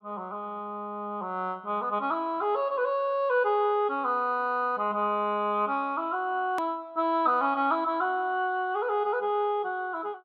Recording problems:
click at an edit; at 6.5 s

